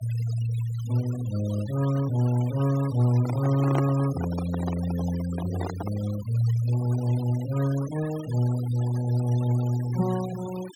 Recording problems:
noise reduction artefacts; signal-to-artefact ratio 17 dB
handling noise; from 3 to 6 s; peak +1 dB vs average level

